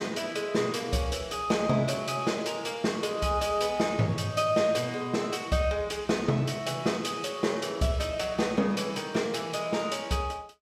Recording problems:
none

